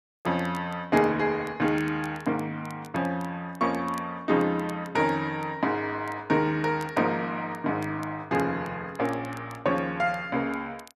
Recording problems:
crackle; vinyl, SNR 26 dB

